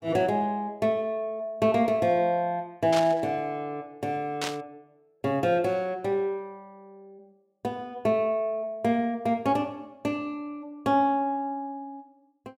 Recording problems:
burst of static; at 3 s and at 4.5 s; peak 0 dB vs average level

